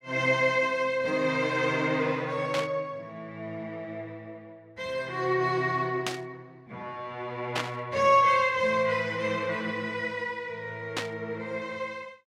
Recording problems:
burst of static; 4 times, first at 2.5 s; peak +2 dB vs average level

